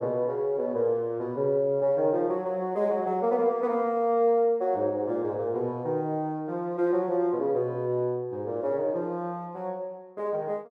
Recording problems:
none

